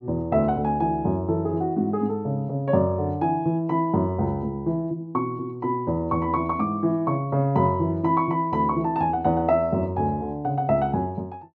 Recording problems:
none

